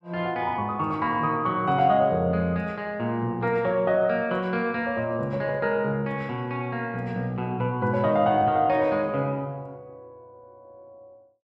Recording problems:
none

